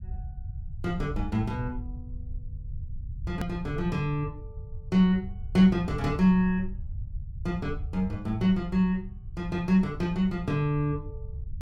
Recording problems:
low-frequency rumble; below 92 Hz, SNR 12 dB
click at an edit; at 3.5 s

